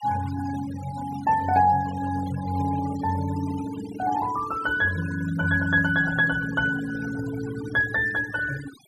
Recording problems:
denoising artefacts; signal-to-artefact ratio 16 dB

